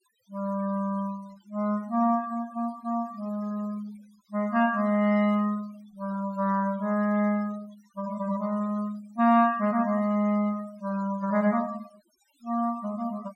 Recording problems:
denoising artefacts; signal-to-artefact ratio 23 dB

